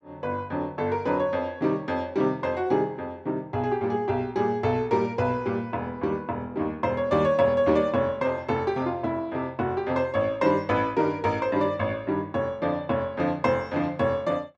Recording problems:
none

